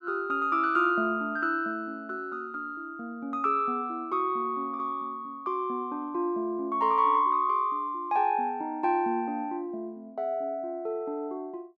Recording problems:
none

